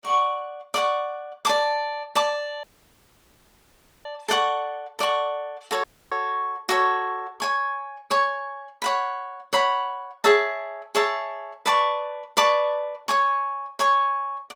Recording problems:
lossy codec; Opus, log-spectral distance 2 dB, nothing above 19 kHz
audio cutting out; at 2.5 s for 1.5 s and at 6 s

